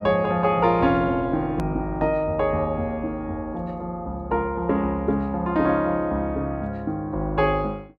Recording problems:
click at an edit; at 1.5 s

